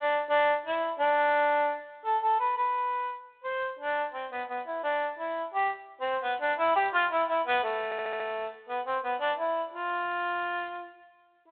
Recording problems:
telephone audio; 260 Hz to 3.8 kHz, G.726
audio stuttering; at 8 s

